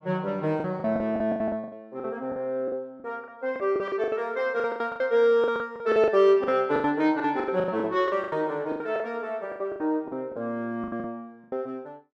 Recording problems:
lost packets; 18% of the sound replaced, filled with the last packet

